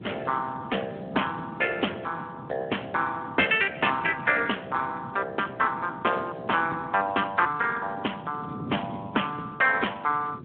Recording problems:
phone line; 240 Hz to 3.3 kHz, Speex
wind on the microphone; below 310 Hz, SNR 14 dB

